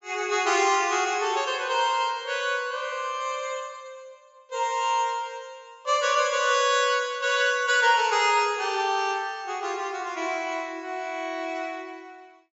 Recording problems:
treble missing; nothing above 8 kHz

